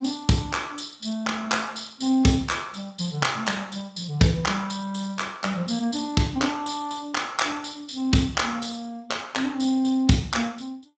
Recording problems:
lossy codec; Speex, log-spectral distance 6 dB, nothing above 7.6 kHz

